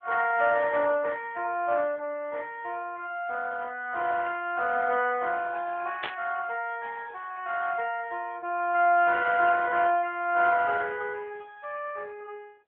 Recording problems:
telephone audio; 280 Hz to 3.5 kHz, AMR-NB
burst of static; at 6 s; peak -2 dB vs average level

